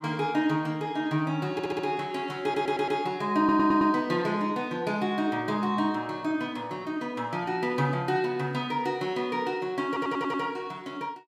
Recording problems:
audio stuttering; 4 times, first at 1.5 s

